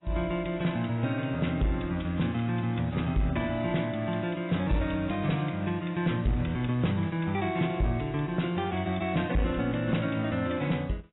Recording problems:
codec artefacts; AAC, log-spectral distance 3 dB, nothing above 3.8 kHz
distortion; soft clipping, signal-to-distortion ratio 11 dB

